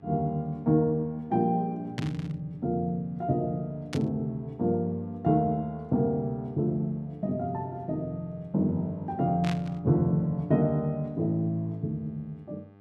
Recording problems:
electrical hum; 50 Hz, harmonics up to 1.7 kHz, SNR 27 dB
static burst; at 2 s, at 4 s and at 9.5 s; peak -4 dB vs average level

